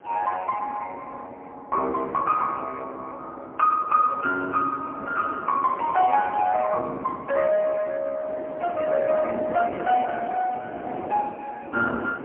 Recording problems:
phone line; 240 Hz to 2.8 kHz, AMR-NB, then MP3
wind noise; below 690 Hz, SNR 14 dB

